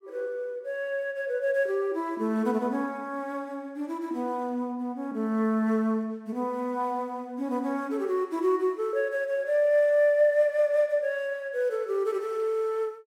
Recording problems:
none

